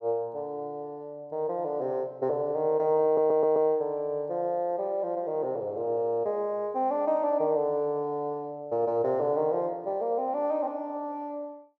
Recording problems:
audio stuttering; at 3 s

